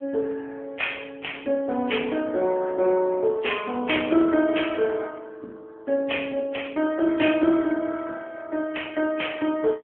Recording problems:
telephone audio; 260 Hz to 3.3 kHz, AMR-NB

